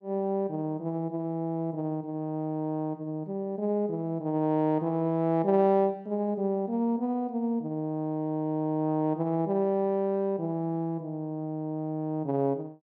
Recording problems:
none

